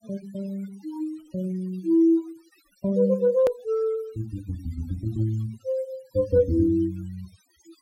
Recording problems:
denoising artefacts; signal-to-artefact ratio 26 dB
edit click; at 3.5 s

